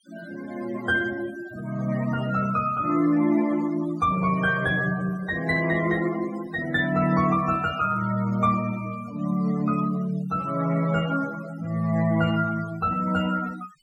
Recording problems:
denoising artefacts; signal-to-artefact ratio 17 dB

